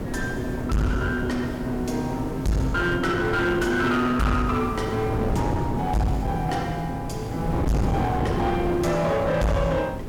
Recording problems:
distorted audio; hard clipping, uneven, signal-to-distortion ratio 6 dB
hiss; SNR 23 dB
wind on the microphone; below 400 Hz, SNR 5 dB

